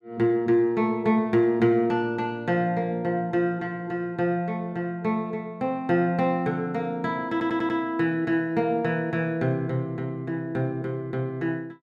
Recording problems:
stutter; at 7.5 s

